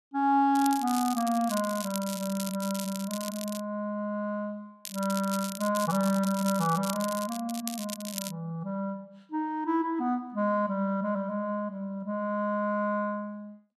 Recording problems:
crackling; from 0.5 to 3.5 s and from 5 to 8.5 s; loose cable, SNR 9 dB

